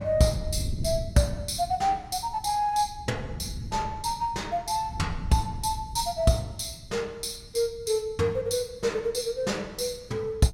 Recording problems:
wind noise; below 130 Hz, SNR 11 dB

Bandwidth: 16.5 kHz